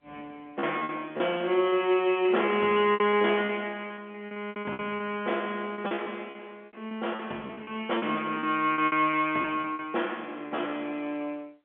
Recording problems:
telephone audio; 240 Hz to 3.4 kHz, G.711
lost packets; 14% of the sound replaced, filled with repeated pitch periods

